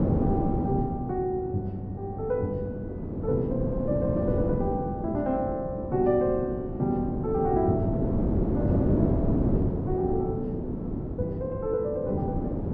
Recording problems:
wind on the microphone; below 340 Hz, SNR 0 dB

